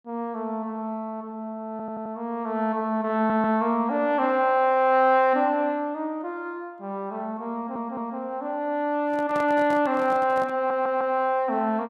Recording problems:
stutter; 4 times, first at 1.5 s
microphone handling noise; from 9 to 11 s; peak -8 dB vs average level

